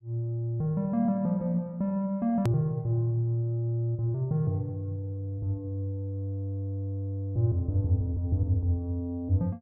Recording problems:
click at an edit; at 2.5 s

